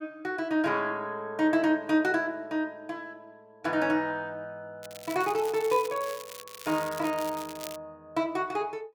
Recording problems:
crackle; from 5 to 8 s; loose cable, SNR 15 dB

